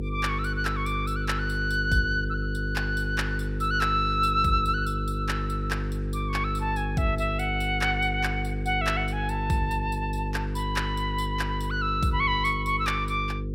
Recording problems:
hum; 50 Hz, harmonics up to 500 Hz, SNR 3 dB

